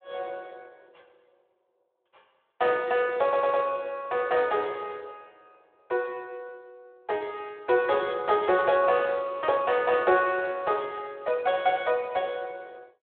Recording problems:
telephone audio; 320 Hz to 3.7 kHz, Speex
stutter; at 3 s

